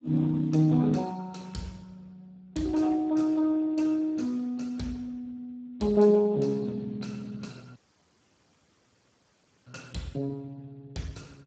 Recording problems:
lossy compression; Speex, log-spectral distance 3 dB, nothing above 7.6 kHz
audio cutting out; at 8 s for 2 s

